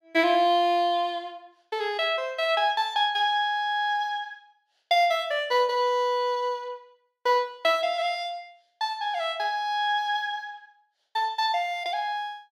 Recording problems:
none

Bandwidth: 15.5 kHz